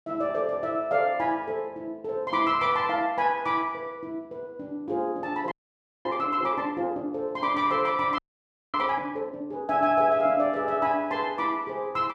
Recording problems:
frozen audio; at 5.5 s for 0.5 s and at 8 s for 0.5 s

